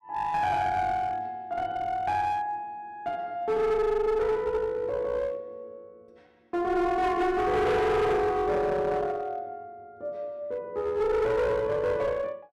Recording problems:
distorted audio; hard clipping, uneven, signal-to-distortion ratio 7 dB

